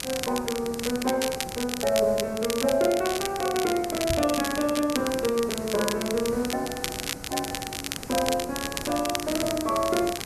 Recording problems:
background hiss; SNR 14 dB
crackle; vinyl, SNR 6 dB
microphone bump; at 4 s; peak 0 dB vs average level

